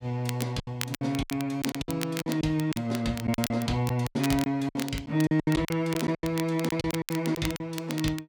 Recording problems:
crackling; vinyl, SNR 11 dB
packet loss; 14% of the sound replaced, filled with silence

